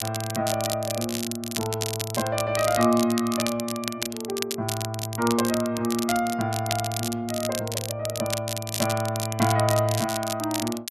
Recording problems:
crackling; vinyl, SNR 5 dB

